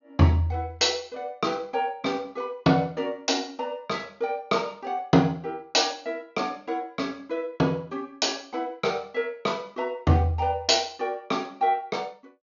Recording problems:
treble missing; nothing above 6.9 kHz

